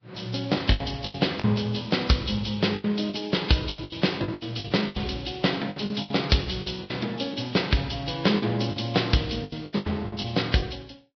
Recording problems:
lossy compression; Vorbis, log-spectral distance 7 dB, nothing above 5.5 kHz
packet loss; 14% of the sound replaced, filled with the last packet

